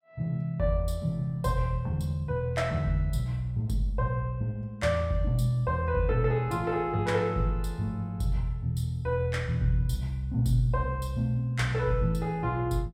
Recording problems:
none

